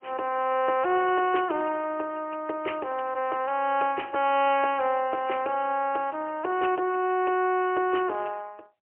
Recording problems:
telephone audio; 320 Hz to 3.1 kHz, AMR-NB, then MP3

